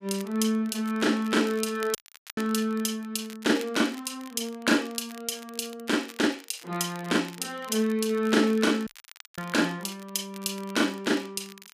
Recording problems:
crackling; vinyl, SNR 21 dB
audio cutting out; at 2 s and at 9 s for 0.5 s

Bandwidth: 15 kHz